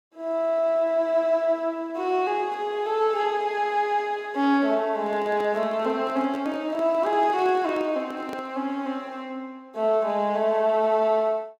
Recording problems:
microphone handling noise; from 5 to 8.5 s; peak -7 dB vs average level

